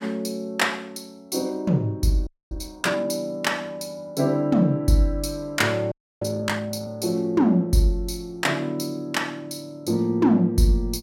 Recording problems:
audio freezing; at 2.5 s and at 6 s

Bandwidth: 16.5 kHz